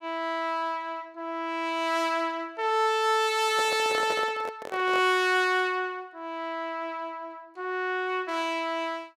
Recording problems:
handling noise; from 3.5 to 5 s; peak -2 dB vs average level

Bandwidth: 16.5 kHz